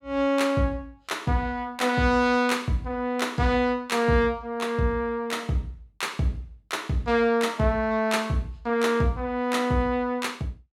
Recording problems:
none

